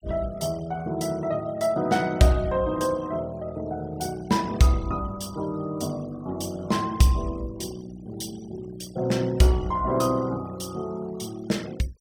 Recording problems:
noise reduction artefacts; signal-to-artefact ratio 23 dB

